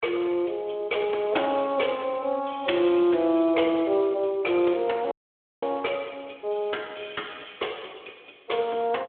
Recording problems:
telephone audio; 280 Hz to 3.5 kHz, Speex
dropout; at 5 s for 0.5 s

